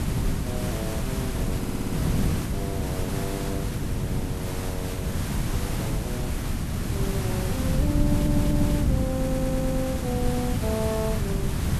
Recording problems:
hiss; slope -3 dB per octave, SNR 3 dB
wind on the microphone; below 190 Hz, SNR -5 dB
stutter; at 1.5 s, at 8 s and at 9 s

